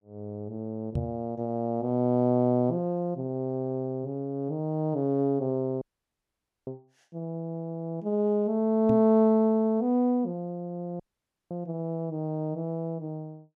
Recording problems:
microphone thump; at 1 s and at 9 s; peak +1 dB vs average level
audio cutting out; at 6 s for 1 s and at 11 s for 0.5 s

